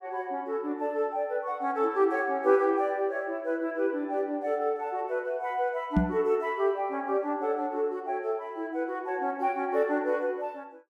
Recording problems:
microphone bump; at 6 s; peak +8 dB vs average level

